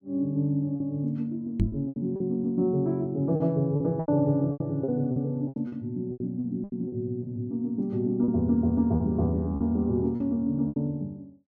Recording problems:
lost packets; 10% of the sound replaced, filled with repeated pitch periods
microphone thump; at 1.5 s; peak +6 dB vs average level

